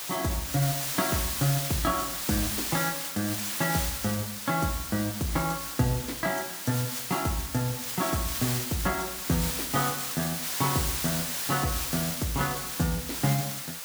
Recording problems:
background hiss; slope +1 dB per octave, SNR 1 dB

